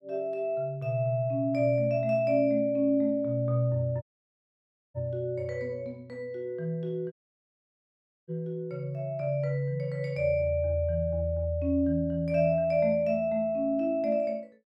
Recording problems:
audio cutting out; at 4 s for 1 s and at 7 s for 1 s

